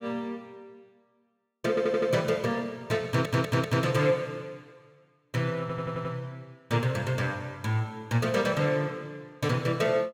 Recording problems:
stutter; at 1.5 s, at 3 s and at 5.5 s

